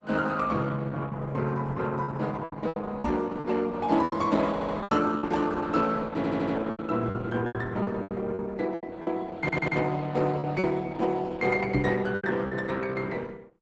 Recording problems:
lossy compression; Opus, log-spectral distance 3 dB, nothing above 8 kHz
packet loss; 9% of the sound replaced, filled with repeated pitch periods
microphone thump; at 3 s and at 12 s; peak +6 dB vs average level
audio stuttering; at 4.5 s, at 6 s and at 9.5 s

